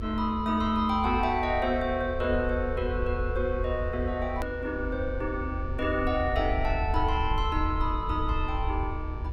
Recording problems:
electrical hum; 60 Hz, harmonics up to 2.4 kHz, SNR 18 dB
low-frequency rumble; below 78 Hz, SNR 5 dB
click at an edit; at 4.5 s

